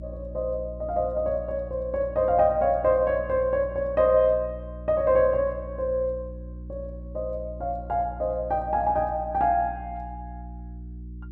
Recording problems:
hum; 60 Hz, harmonics up to 360 Hz, SNR 14 dB

